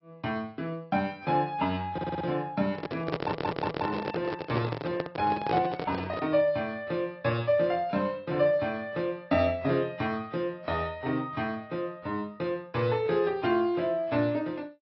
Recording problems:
treble cut off; nothing above 5.4 kHz
lossy codec; AAC, log-spectral distance 2 dB
stutter; at 2 s and at 3 s
handling noise; from 2.5 to 6.5 s; peak +3 dB vs average level

